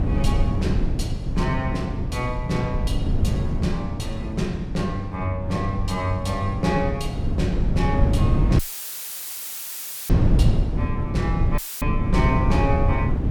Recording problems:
wind on the microphone; below 150 Hz, SNR -3 dB
audio cutting out; at 8.5 s for 1.5 s and at 12 s; filled with static

